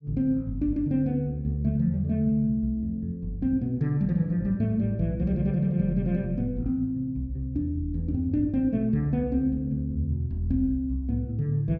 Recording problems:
none

